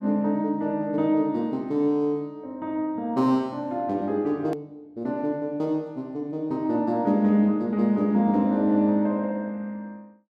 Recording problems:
edit click; at 4.5 s

